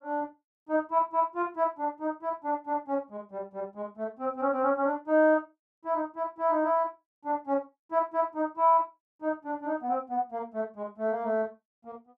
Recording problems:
none

